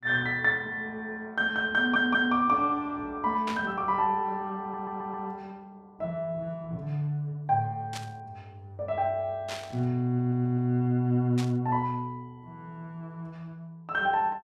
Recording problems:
audio stuttering; at 2 s, at 4.5 s and at 10 s
static burst; 4 times, first at 3.5 s; peak -4 dB vs average level

